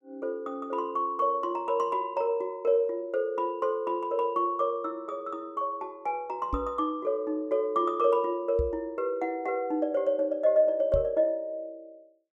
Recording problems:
microphone thump; at 6.5 s, at 8.5 s and at 11 s; peak +1 dB vs average level

